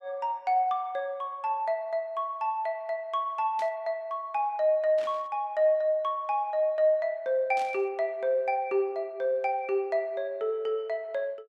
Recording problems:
static burst; at 3.5 s, at 5 s and at 7.5 s; peak -12 dB vs average level

